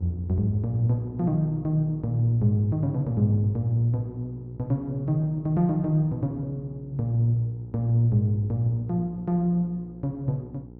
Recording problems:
electrical hum; 60 Hz, harmonics up to 840 Hz, SNR 18 dB

